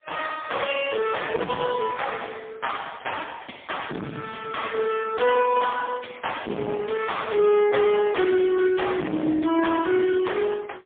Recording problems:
phone line; 190 Hz to 3.4 kHz, AMR-NB, then MP3
distorted audio; soft clipping, signal-to-distortion ratio 2 dB

